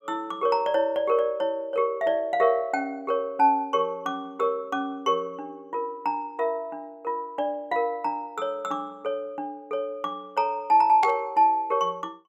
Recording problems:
static burst; at 11 s; peak -6 dB vs average level

